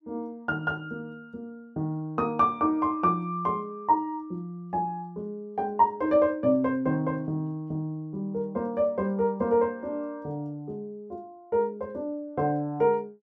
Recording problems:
none

